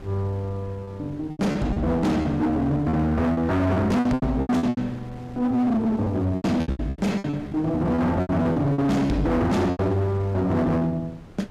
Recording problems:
distorted audio; hard clipping, signal-to-distortion ratio 7 dB
wind on the microphone; below 480 Hz, SNR 19 dB
lost packets; 13% of the sound replaced, filled with repeated pitch periods

